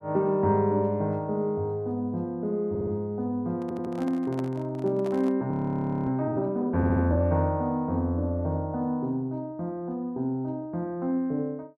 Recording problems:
audio stuttering; at 2.5 s, at 3.5 s and at 7 s
microphone handling noise; from 3.5 to 5.5 s; peak -8 dB vs average level
frozen audio; at 5.5 s for 0.5 s

